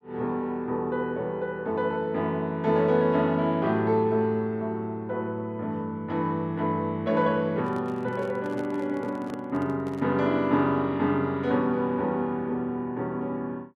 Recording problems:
handling noise; from 7.5 to 10 s; peak -9 dB vs average level

